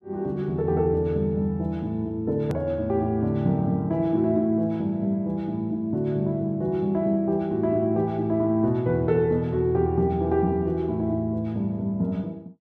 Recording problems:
hard cut with a click; at 2.5 s

